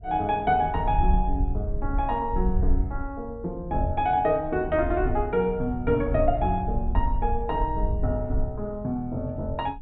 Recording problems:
treble missing; nothing above 4 kHz
wind noise; below 64 Hz, SNR 4 dB

